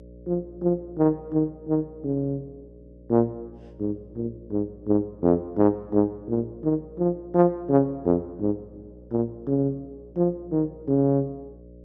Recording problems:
hum; 60 Hz, harmonics up to 600 Hz, SNR 22 dB

